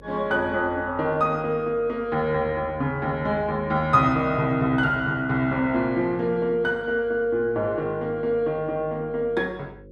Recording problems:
hum; 50 Hz, harmonics up to 550 Hz, SNR 24 dB

